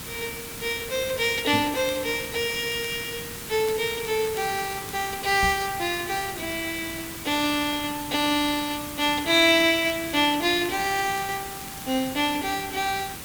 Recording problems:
background hiss; SNR 10 dB
crackle; from 1.5 to 5 s and from 9.5 to 12 s; loose cable, SNR 22 dB
knock on the microphone; at 1.5 s and at 5.5 s; peak -1 dB vs average level

